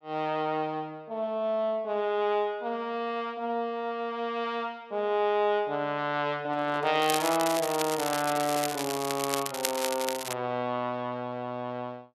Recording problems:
handling noise; from 6.5 to 9 s; peak -9 dB vs average level
crackle; from 7 to 10 s; loose cable, SNR 5 dB

